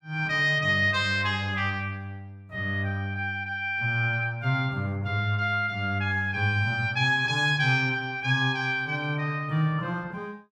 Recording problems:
none

